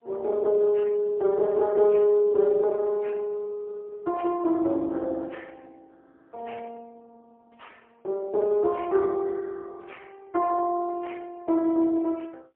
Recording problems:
telephone audio; 280 Hz to 3.6 kHz, AMR-NB, then MP3

